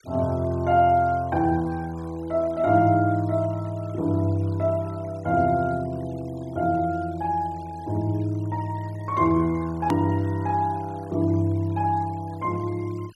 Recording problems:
noise reduction artefacts; signal-to-artefact ratio 26 dB
hard cut with a click; at 10 s

